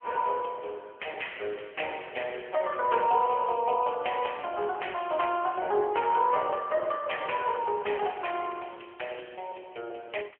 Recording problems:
telephone audio; 340 Hz to 3.2 kHz, AMR-NB

